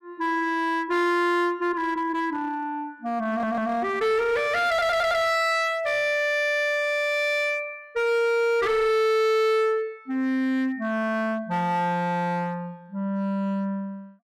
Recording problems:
distortion; hard clipping, uneven, signal-to-distortion ratio 10 dB
audio stuttering; at 3.5 s and at 4.5 s

